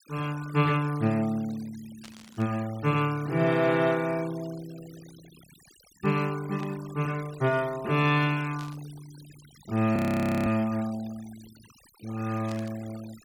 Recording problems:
noise reduction artefacts; signal-to-artefact ratio 20 dB
static burst; 4 times, first at 2 s; peak -13 dB vs average level
audio freezing; at 10 s for 0.5 s

